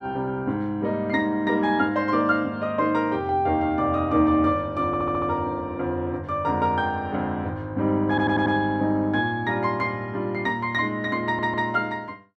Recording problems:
audio stuttering; at 5 s, at 8 s and at 11 s

